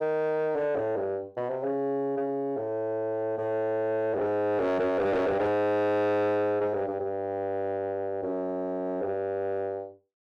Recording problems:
distortion; soft clipping, signal-to-distortion ratio 10 dB

